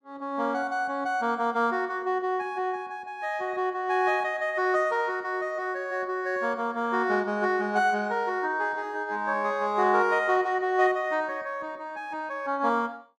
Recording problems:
none

